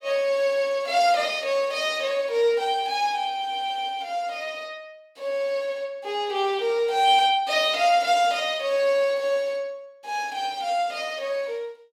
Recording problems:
none

